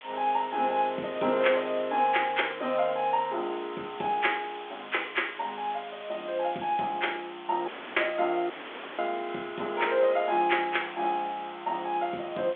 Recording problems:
telephone audio; 220 Hz to 3.5 kHz, G.726
hiss; SNR 17 dB
dropout; at 7.5 s and at 8.5 s

